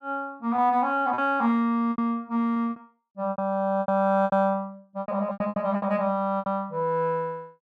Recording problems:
packet loss; 12% of the sound replaced, filled with repeated pitch periods

